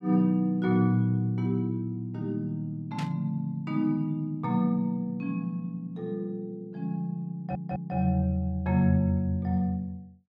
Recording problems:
static burst; at 3 s; peak -7 dB vs average level
stutter; at 7.5 s

